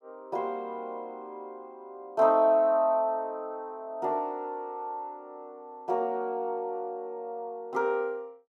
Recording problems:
none

